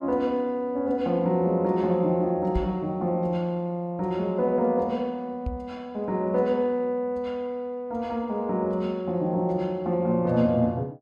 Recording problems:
microphone thump; at 2.5 s and at 5.5 s; peak 0 dB vs average level

